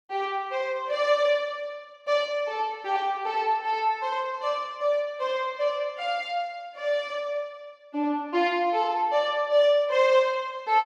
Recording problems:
none

